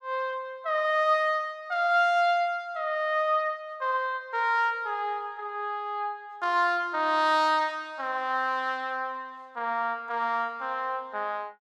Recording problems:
none

